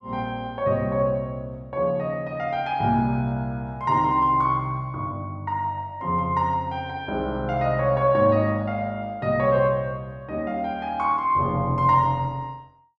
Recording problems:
none

